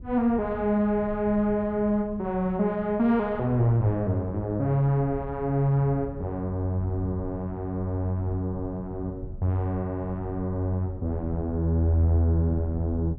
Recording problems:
wind on the microphone; below 130 Hz, SNR 15 dB

